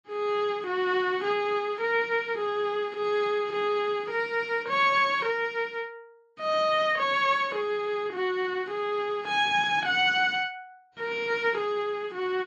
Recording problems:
lossy compression; MP3, then AAC, log-spectral distance 2 dB, nothing above 9.5 kHz

